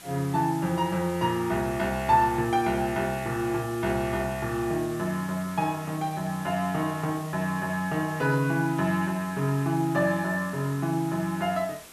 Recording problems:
background hiss; slope -1 dB per octave, SNR 18 dB

